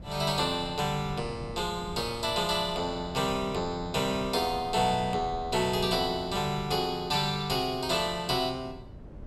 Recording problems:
wind on the microphone; below 230 Hz, SNR 15 dB

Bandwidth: 16 kHz